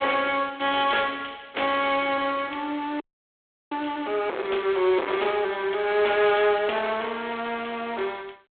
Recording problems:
telephone audio; 300 Hz to 3.7 kHz, G.726
distortion; hard clipping, uneven, signal-to-distortion ratio 9 dB
audio freezing; at 3 s for 0.5 s

